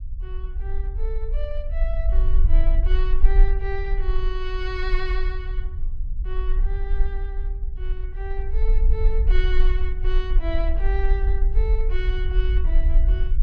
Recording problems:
rumble; below 44 Hz, strongest tone 22 Hz, SNR -9 dB

